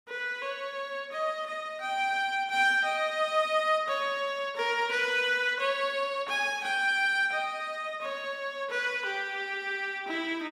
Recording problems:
none

